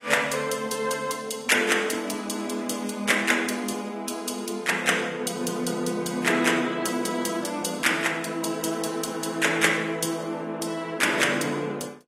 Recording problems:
codec artefacts; AAC, log-spectral distance 4 dB, nothing above 14.3 kHz

